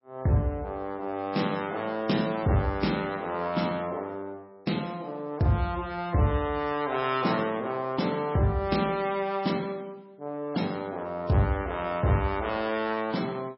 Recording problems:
lossy codec; MP3, log-spectral distance 3 dB, nothing above 5.5 kHz

